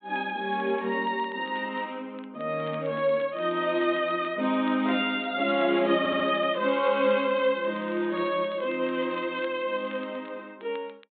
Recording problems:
low-pass filter; nothing above 4 kHz
crackle; vinyl, SNR 27 dB
audio stuttering; at 6 s

